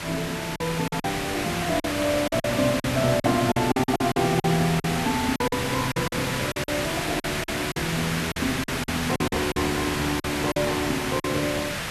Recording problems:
hiss; SNR 2 dB
lost packets; 11% of the sound replaced, filled with silence

